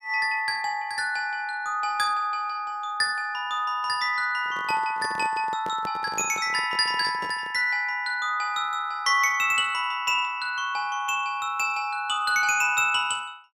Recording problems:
handling noise; from 4.5 to 7.5 s; peak -8 dB vs average level

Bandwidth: 15 kHz